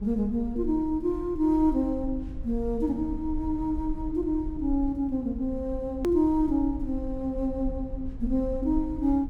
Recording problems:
low-frequency rumble; below 58 Hz, SNR 12 dB
hard cut with a click; at 6 s

